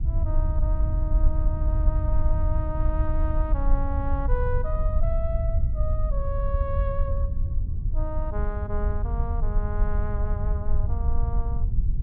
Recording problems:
low-frequency rumble; below 68 Hz, SNR -8 dB

